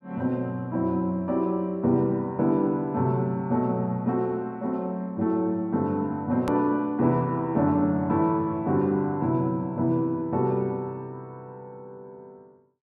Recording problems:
click at an edit; at 6.5 s

